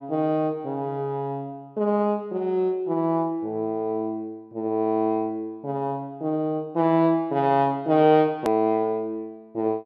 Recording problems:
click at an edit; at 8.5 s

